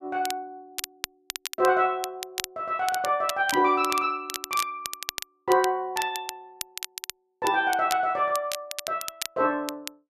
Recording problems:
crackling; vinyl, SNR 10 dB

